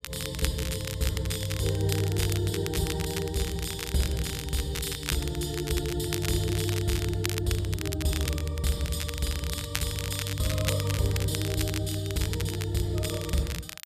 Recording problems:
crackle; vinyl, SNR 7 dB

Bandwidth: 14.5 kHz